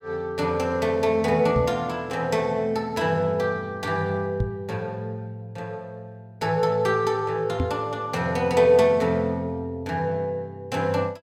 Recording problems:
microphone thump; at 1.5 s, at 4.5 s and at 7.5 s; peak +2 dB vs average level

